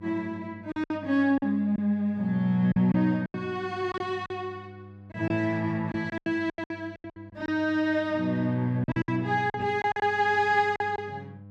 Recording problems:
electrical hum; 50 Hz, harmonics up to 600 Hz, SNR 20 dB
packet loss; 11% of the sound replaced, filled with silence

